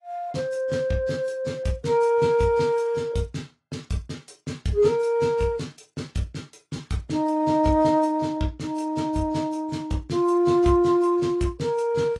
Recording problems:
codec artefacts; AAC, log-spectral distance 2 dB, nothing above 11 kHz

